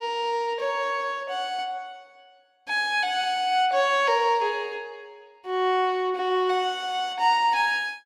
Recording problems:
none

